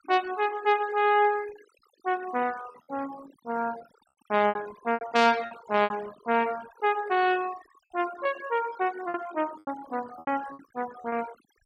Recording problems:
noise reduction artefacts; signal-to-artefact ratio 17 dB
lost packets; 8% of the sound replaced, filled with repeated pitch periods

